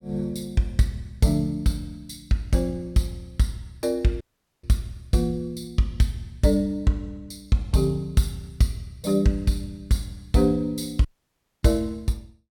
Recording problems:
audio cutting out; at 4 s and at 11 s for 0.5 s

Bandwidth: 17 kHz